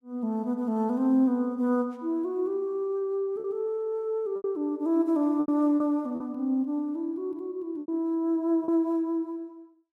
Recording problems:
lost packets; 4% of the sound replaced, filled with repeated pitch periods

